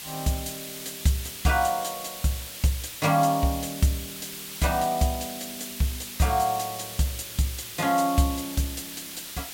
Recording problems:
background hiss; slope +1 dB per octave, SNR 9 dB

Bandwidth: 16.5 kHz